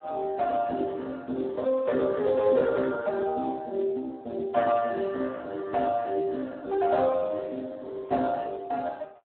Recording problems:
telephone audio; 170 Hz to 2.1 kHz, Speex

